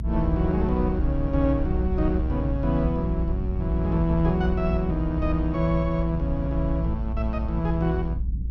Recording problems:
low-frequency rumble; below 70 Hz, strongest tone 58 Hz, SNR 2 dB

